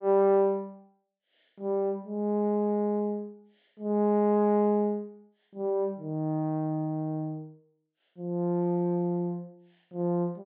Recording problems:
low-pass filter; nothing above 4.4 kHz

